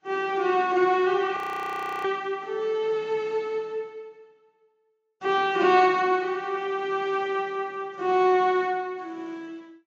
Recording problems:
lossy compression; AAC, log-spectral distance 2 dB, nothing above 20.1 kHz
frozen audio; at 1.5 s for 0.5 s

